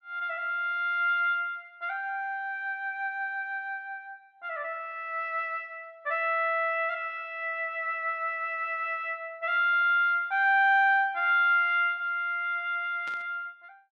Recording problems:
static burst; at 13 s; peak -14 dB vs average level

